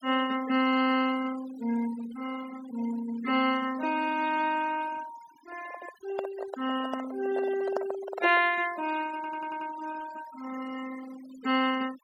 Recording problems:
noise reduction artefacts; signal-to-artefact ratio 15 dB
microphone handling noise; from 5.5 to 8.5 s; peak +2 dB vs average level
audio stuttering; at 9 s

